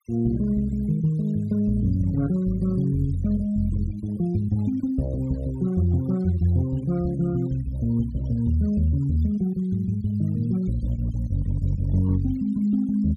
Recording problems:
denoising artefacts; signal-to-artefact ratio 26 dB

